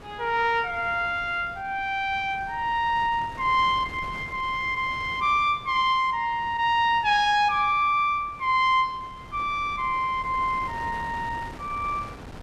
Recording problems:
wind noise; below 920 Hz, SNR 19 dB

